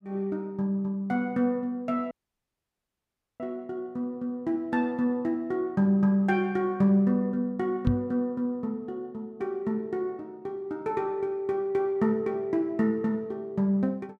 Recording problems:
dropout; at 2 s for 1.5 s
microphone thump; at 8 s; peak +6 dB vs average level

